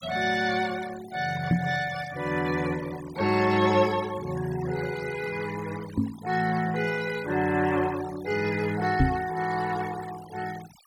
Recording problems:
noise reduction artefacts; signal-to-artefact ratio 15 dB
microphone bump; at 1.5 s, at 6 s and at 9 s; peak +8 dB vs average level

